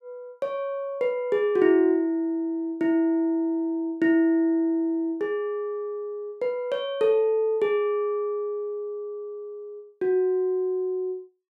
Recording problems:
none

